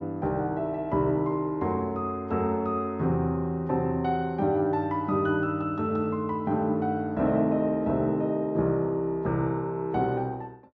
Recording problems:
treble cut off; nothing above 8 kHz

